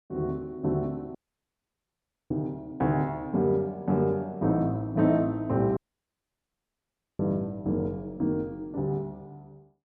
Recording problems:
audio cutting out; at 1 s for 1 s and at 6 s for 1.5 s

